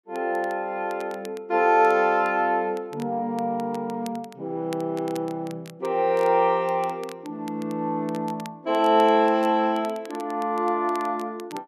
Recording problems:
crackle; vinyl, SNR 25 dB

